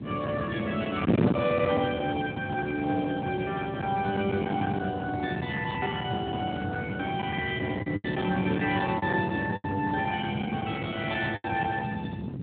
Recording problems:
phone line; 150 Hz to 3.7 kHz, Speex
distortion; hard clipping, signal-to-distortion ratio 11 dB
wind on the microphone; below 380 Hz, SNR 5 dB
lost packets; 3% of the sound replaced, filled with the last packet

